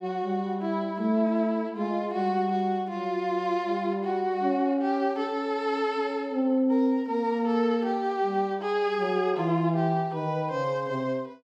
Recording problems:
none

